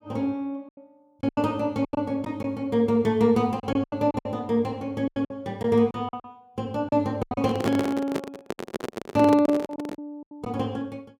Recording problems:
lost packets; 12% of the sound replaced, filled with silence
handling noise; from 7.5 to 10 s; peak +2 dB vs average level

